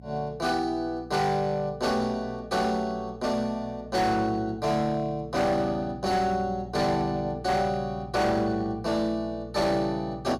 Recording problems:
distorted audio; hard clipping, signal-to-distortion ratio 12 dB
electrical hum; 60 Hz, harmonics up to 540 Hz, SNR 17 dB

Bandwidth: 15.5 kHz